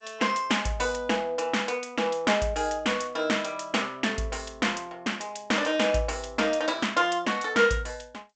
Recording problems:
lossy codec; G.722, log-spectral distance 4 dB, nothing above 7.8 kHz

